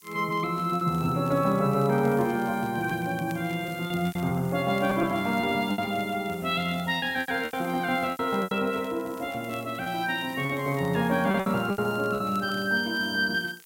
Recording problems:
background hiss; SNR 22 dB
crackle; vinyl, SNR 27 dB
lost packets; 7% of the sound replaced, filled with repeated pitch periods

